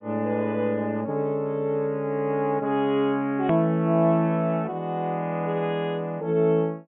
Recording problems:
low-pass filter; nothing above 3.3 kHz
hard cut with a click; at 3.5 s

